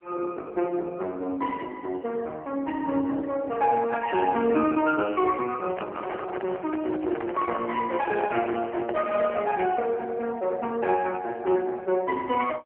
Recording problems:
telephone audio; 260 Hz to 2.8 kHz, AMR-NB
microphone handling noise; from 5.5 to 9 s; peak -3 dB vs average level

